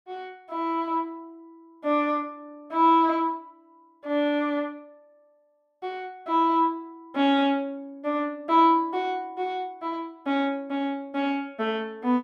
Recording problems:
none

